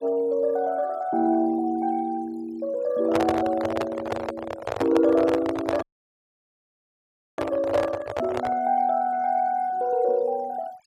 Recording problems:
denoising artefacts; signal-to-artefact ratio 22 dB
microphone handling noise; from 3 to 8.5 s; peak +3 dB vs average level
dropout; at 6 s for 1.5 s

